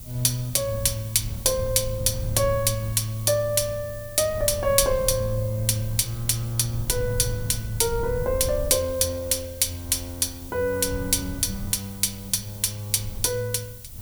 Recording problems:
hiss; slope +5 dB per octave, SNR 18 dB
wind on the microphone; below 110 Hz, SNR 13 dB

